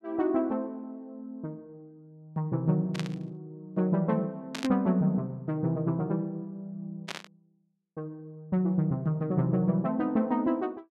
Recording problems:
burst of static; at 3 s, at 4.5 s and at 7 s; peak -2 dB vs average level

